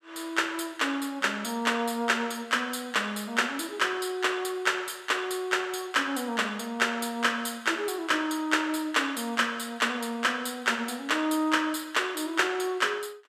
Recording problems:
none

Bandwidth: 14.5 kHz